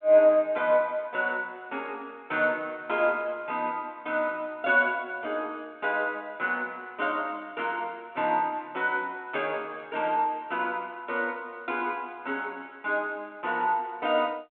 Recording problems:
phone line; 280 Hz to 3.3 kHz, G.726

